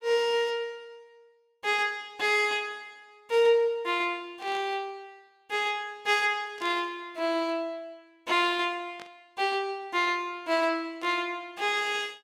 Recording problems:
burst of static; 4 times, first at 4.5 s; peak -13 dB vs average level

